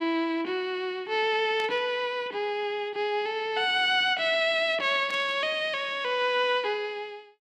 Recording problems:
burst of static; at 1.5 s and at 5 s; peak -11 dB vs average level

